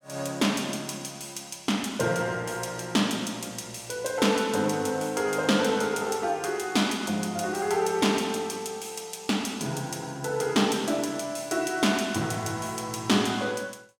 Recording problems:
none

